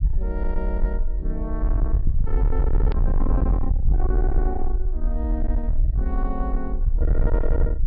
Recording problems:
low-pass filter; nothing above 5.5 kHz
distortion; soft clipping, signal-to-distortion ratio 7 dB
low-frequency rumble; below 52 Hz, SNR -6 dB
click at an edit; at 3 s

